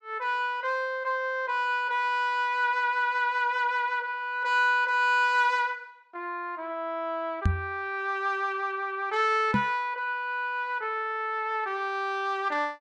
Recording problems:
microphone bump; at 7.5 s and at 9.5 s; peak +6 dB vs average level

